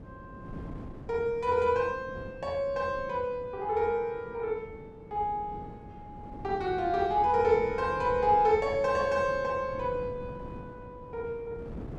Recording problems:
wind noise; below 320 Hz, SNR 16 dB

